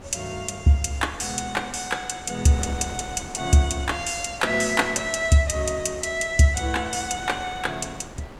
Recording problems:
wind noise; below 960 Hz, SNR 17 dB

